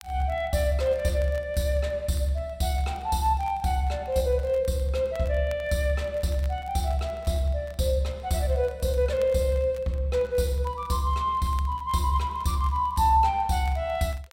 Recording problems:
crackle; vinyl, SNR 28 dB

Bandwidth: 16 kHz